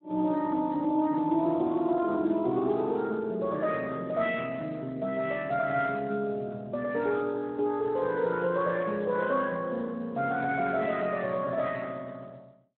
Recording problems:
phone line; 170 Hz to 3.9 kHz, Speex

